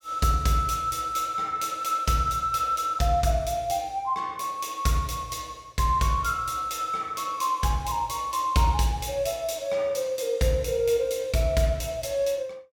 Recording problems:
none

